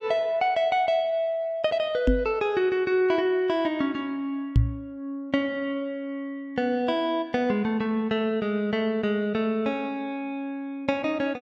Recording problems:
microphone bump; at 2 s and at 4.5 s; peak +9 dB vs average level

